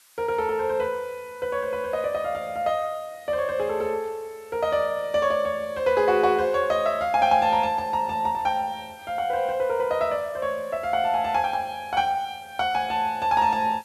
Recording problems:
background hiss; SNR 28 dB

